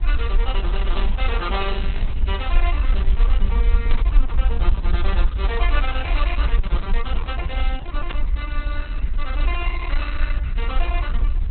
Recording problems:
lossy codec; Opus, log-spectral distance 4 dB, nothing above 4.1 kHz
hum; 60 Hz, harmonics up to 840 Hz, SNR 19 dB
hiss; SNR 19 dB
low-frequency rumble; below 52 Hz, SNR -8 dB
burst of static; at 4 s and at 8 s; peak +4 dB vs average level

